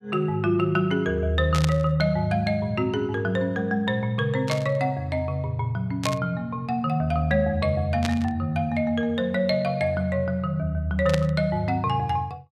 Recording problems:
burst of static; 5 times, first at 1.5 s; peak 0 dB vs average level

